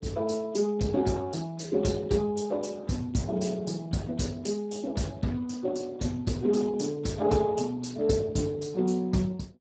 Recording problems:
codec artefacts; Speex, log-spectral distance 4 dB, nothing above 7.6 kHz

